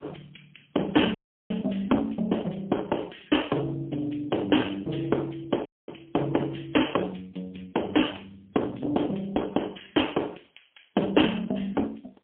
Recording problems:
phone line; 260 Hz to 3.3 kHz, AMR-NB, then MP3
dropout; at 1 s and at 5.5 s

